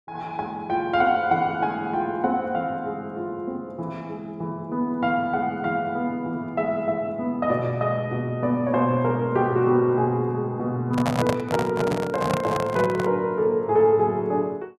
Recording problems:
microphone handling noise; from 11 to 13 s; peak +3 dB vs average level

